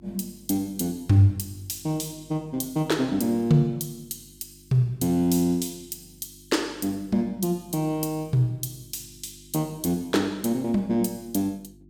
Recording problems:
hum; 50 Hz, harmonics up to 350 Hz, SNR 27 dB

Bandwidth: 17 kHz